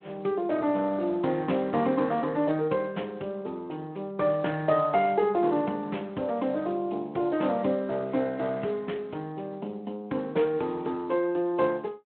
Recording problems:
phone line; 220 Hz to 3.5 kHz, Speex

